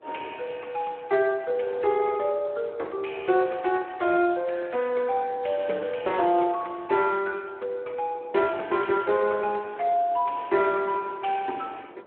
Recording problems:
telephone audio; 300 Hz to 3 kHz, Speex
wind noise; below 720 Hz, SNR 24 dB

